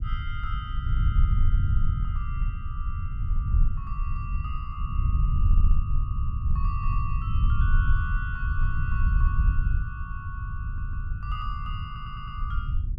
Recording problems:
low-frequency rumble; below 78 Hz, SNR -11 dB
audio stuttering; at 5.5 s, at 11 s and at 12 s

